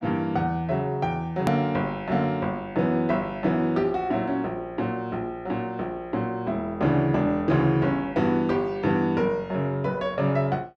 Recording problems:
edit click; at 1.5 s

